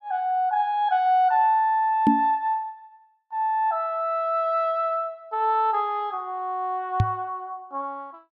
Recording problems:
microphone bump; at 2 s and at 7 s; peak +8 dB vs average level

